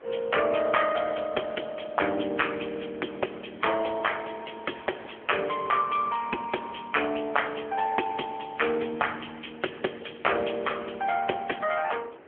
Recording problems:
telephone audio; 280 Hz to 3.2 kHz, AMR-NB
wind noise; below 1.6 kHz, SNR 22 dB

